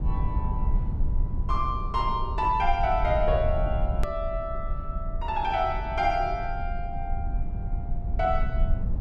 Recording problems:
low-frequency rumble; below 70 Hz, SNR 3 dB
edit click; at 4 s

